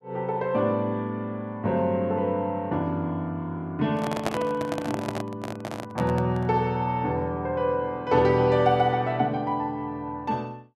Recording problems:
microphone handling noise; from 4 to 6.5 s; peak +3 dB vs average level

